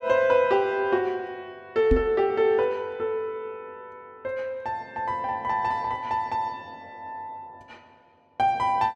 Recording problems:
microphone bump; at 2 s; peak +5 dB vs average level

